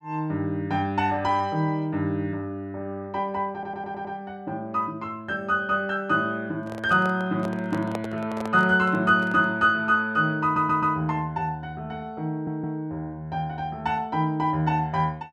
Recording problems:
audio stuttering; at 3.5 s, at 10 s and at 12 s
microphone handling noise; from 6.5 to 9.5 s; peak -2 dB vs average level

